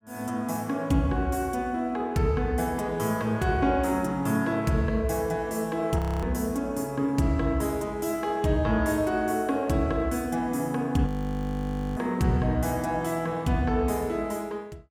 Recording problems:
frozen audio; at 6 s and at 11 s for 1 s

